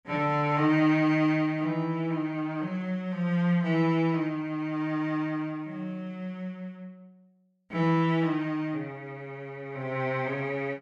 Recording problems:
none

